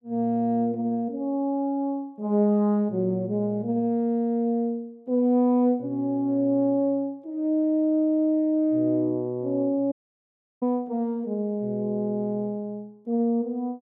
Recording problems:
dropout; at 10 s for 0.5 s

